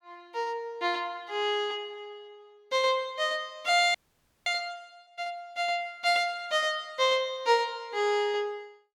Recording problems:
audio freezing; at 4 s for 0.5 s

